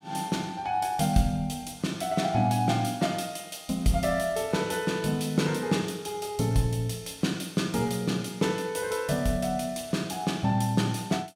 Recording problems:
none

